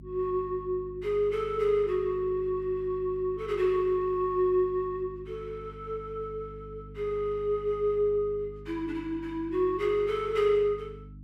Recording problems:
hum; 50 Hz, harmonics up to 300 Hz, SNR 18 dB

